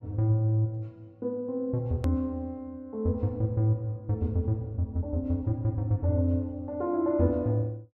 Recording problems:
click at an edit; at 2 s

